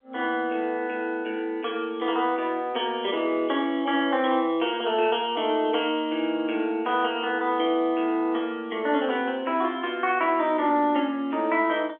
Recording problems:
telephone audio; 260 Hz to 3.4 kHz, G.711

